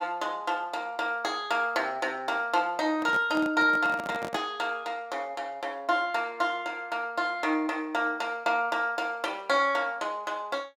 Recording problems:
microphone handling noise; from 3 to 4.5 s; peak -4 dB vs average level

